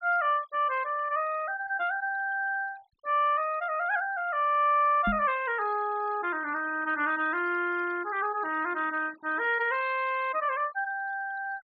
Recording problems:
treble cut off; nothing above 5.5 kHz
noise reduction artefacts; signal-to-artefact ratio 22 dB
microphone bump; at 5 s; peak 0 dB vs average level

